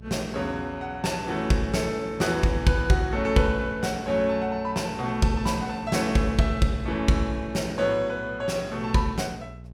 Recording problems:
hum; 60 Hz, harmonics up to 660 Hz, SNR 19 dB

